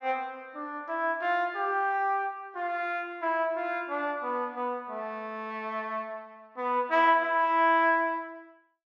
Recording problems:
none

